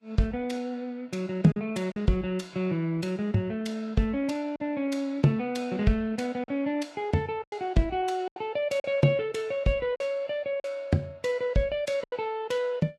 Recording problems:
lossy codec; Vorbis, log-spectral distance 2 dB, nothing above 13.1 kHz
lost packets; 4% of the sound replaced, filled with silence

